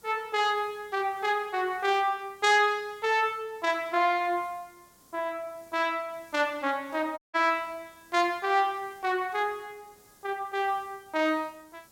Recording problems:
hiss; SNR 29 dB
dropout; at 7 s

